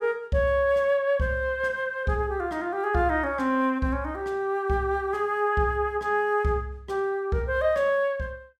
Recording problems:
none

